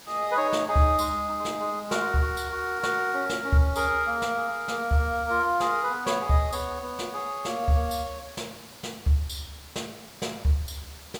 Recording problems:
hiss; slope -1 dB per octave, SNR 19 dB

